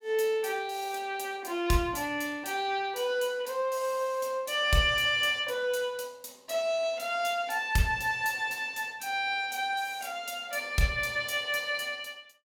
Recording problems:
none

